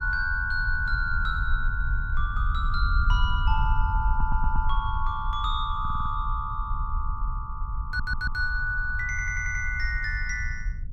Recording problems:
wind on the microphone; below 60 Hz, SNR 1 dB
stutter; 4 times, first at 4 s

